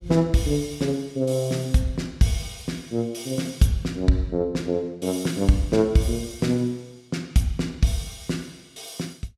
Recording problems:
none

